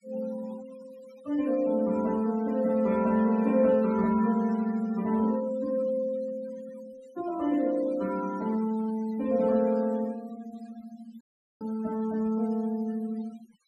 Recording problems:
denoising artefacts; signal-to-artefact ratio 21 dB
audio cutting out; at 11 s

